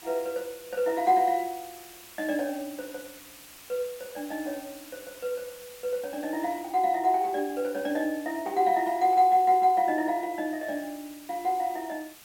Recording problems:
hiss; slope 0 dB per octave, SNR 19 dB

